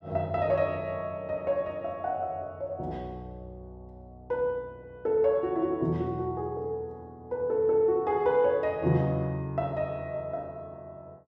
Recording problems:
none

